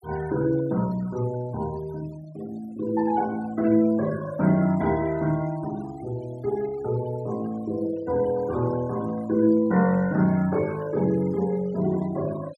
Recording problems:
denoising artefacts; signal-to-artefact ratio 20 dB

